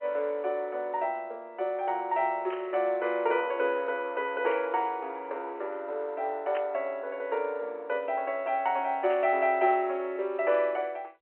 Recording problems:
telephone audio; 300 Hz to 3.2 kHz, G.711
static burst; 4 times, first at 2.5 s; peak -7 dB vs average level

